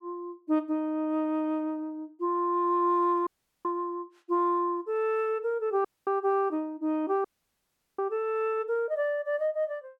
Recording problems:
dropout; at 3.5 s, at 6 s and at 7.5 s for 0.5 s

